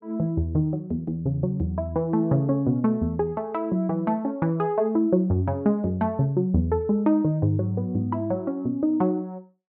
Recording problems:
none

